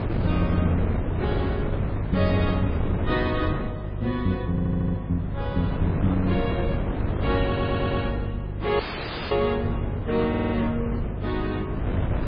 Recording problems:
codec artefacts; MP3, log-spectral distance 3 dB, nothing above 5 kHz
mains hum; 50 Hz, harmonics up to 550 Hz, SNR 6 dB
wind noise; below 330 Hz, SNR 2 dB
stutter; at 4.5 s, at 7.5 s and at 10 s
dropout; at 9 s for 0.5 s

